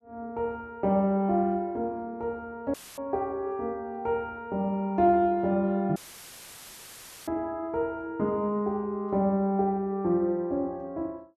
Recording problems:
audio cutting out; at 2.5 s and at 6 s for 1.5 s; filled with static

